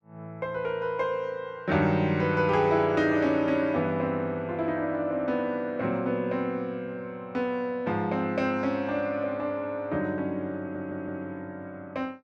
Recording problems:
audio stuttering; at 11 s

